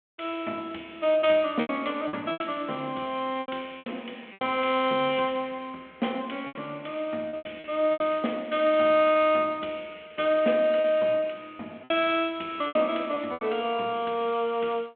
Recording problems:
telephone audio; 190 Hz to 3.4 kHz, G.726
lost packets; 8% of the sound replaced, filled with repeated pitch periods

